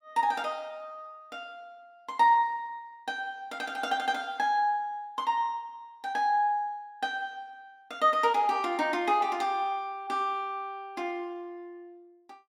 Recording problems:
none

